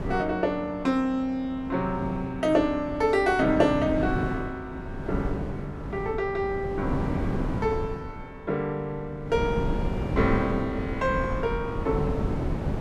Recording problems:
wind noise; below 310 Hz, SNR 5 dB

